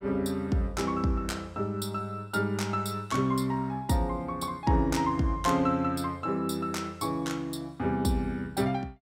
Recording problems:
none

